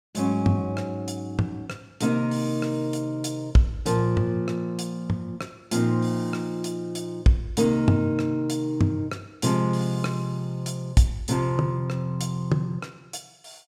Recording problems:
none

